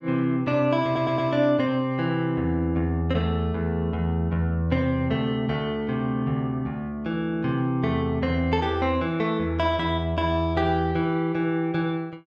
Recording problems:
audio stuttering; at 1 s

